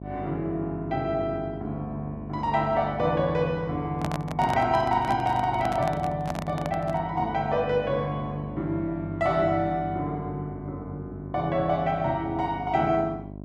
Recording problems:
hum; 50 Hz, harmonics up to 1.1 kHz, SNR 12 dB
handling noise; from 4 to 7 s; peak 0 dB vs average level

